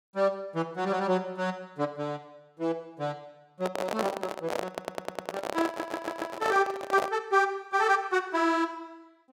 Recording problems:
microphone handling noise; from 3.5 to 7 s; peak +3 dB vs average level
audio stuttering; at 4.5 s and at 5.5 s

